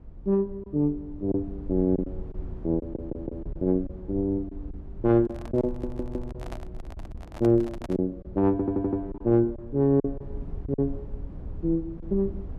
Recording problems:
rumble; below 86 Hz, SNR 14 dB
packet loss; 6% of the sound replaced, filled with silence
stutter; at 3 s, at 5.5 s and at 8.5 s
handling noise; from 5 to 8 s; peak -7 dB vs average level

